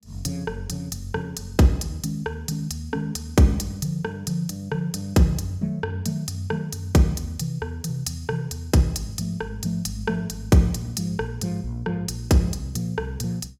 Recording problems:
none

